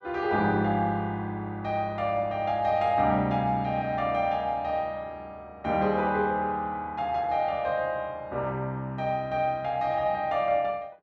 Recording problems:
none

